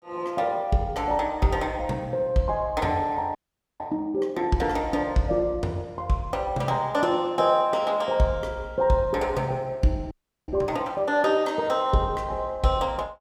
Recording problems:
frozen audio; at 3.5 s and at 10 s

